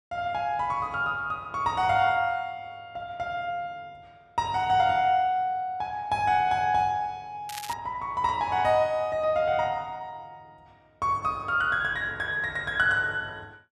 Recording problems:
crackle; at 7.5 s; loose cable, SNR 15 dB

